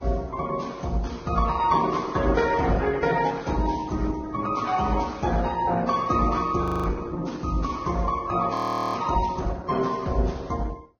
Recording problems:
lossy compression; Opus, then Vorbis, log-spectral distance 4 dB, nothing above 20.1 kHz
audio freezing; at 6.5 s and at 8.5 s

